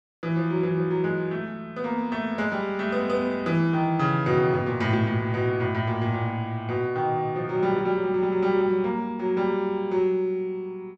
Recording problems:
none

